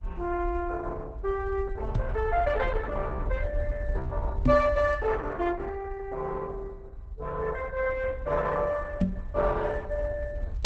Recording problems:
codec artefacts; Opus, log-spectral distance 2 dB
rumble; below 60 Hz, SNR 5 dB
microphone thump; at 2 s, at 4.5 s and at 9 s; peak +9 dB vs average level

